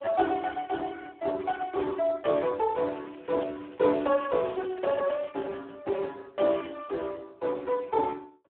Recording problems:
phone line; 260 Hz to 2.2 kHz, Speex
crackling; from 3 to 5.5 s; loose cable, SNR 27 dB

